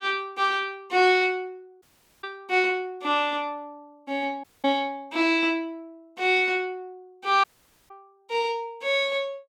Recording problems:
audio cutting out; at 2 s, at 4.5 s and at 7.5 s

